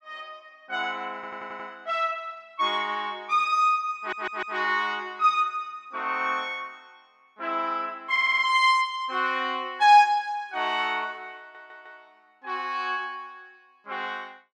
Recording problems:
stutter; 4 times, first at 1 s

